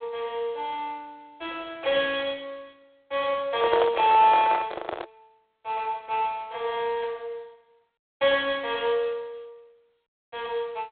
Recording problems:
telephone audio; 300 Hz to 3.6 kHz, G.726
microphone handling noise; from 3.5 to 5 s; peak +3 dB vs average level

